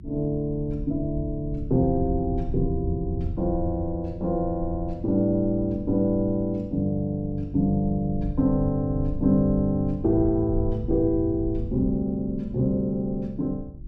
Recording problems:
hum; 50 Hz, harmonics up to 350 Hz, SNR 26 dB
low-frequency rumble; below 90 Hz, SNR 10 dB

